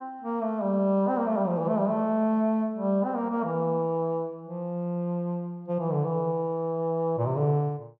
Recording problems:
none

